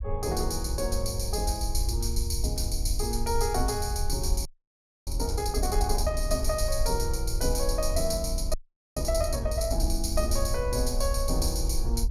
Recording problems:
low-frequency rumble; below 62 Hz, SNR 2 dB
frozen audio; at 4.5 s for 0.5 s and at 8.5 s

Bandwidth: 16.5 kHz